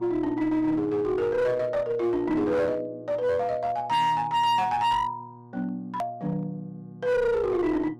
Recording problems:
distortion; hard clipping, uneven, signal-to-distortion ratio 10 dB
hum; 60 Hz, harmonics up to 1.2 kHz, SNR 21 dB
edit click; at 6 s

